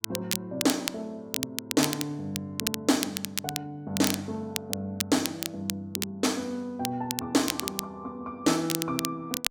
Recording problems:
crackle; vinyl, SNR 3 dB

